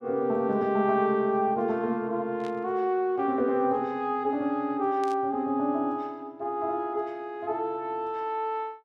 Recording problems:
static burst; at 2.5 s and at 5 s; peak -13 dB vs average level

